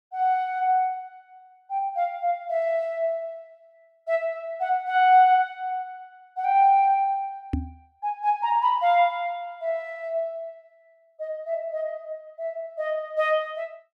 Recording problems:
microphone bump; at 7.5 s; peak +1 dB vs average level

